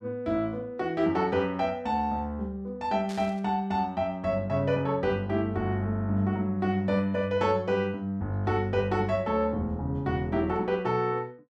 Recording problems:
burst of static; at 3 s; peak -11 dB vs average level

